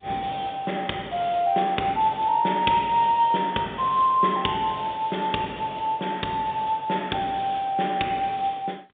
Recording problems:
telephone audio; 170 Hz to 3.7 kHz, G.711

